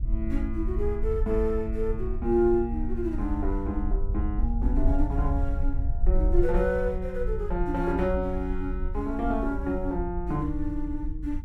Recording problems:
wind noise; below 58 Hz, SNR 2 dB

